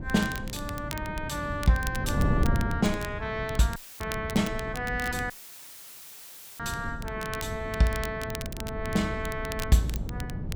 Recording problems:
wind noise; below 190 Hz, SNR 5 dB
crackle; vinyl, SNR 13 dB
audio cutting out; at 4 s and at 5.5 s for 1.5 s; filled with static

